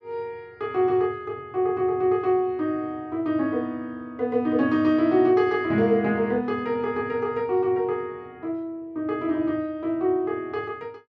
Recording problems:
none

